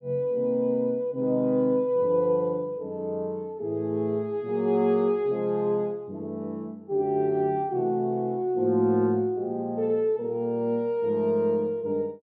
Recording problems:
none

